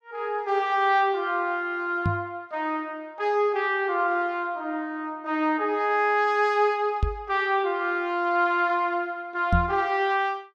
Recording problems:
knock on the microphone; at 2 s, at 7 s and at 9.5 s; peak +5 dB vs average level

